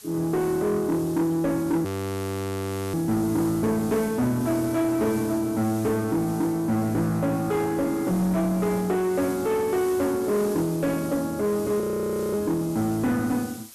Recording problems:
distorted audio; soft clipping, signal-to-distortion ratio 10 dB
hiss; slope +1 dB per octave, SNR 17 dB
frozen audio; at 2 s for 1 s and at 12 s for 0.5 s

